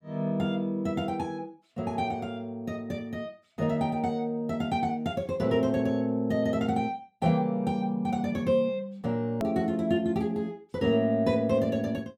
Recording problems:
edit click; at 9.5 s

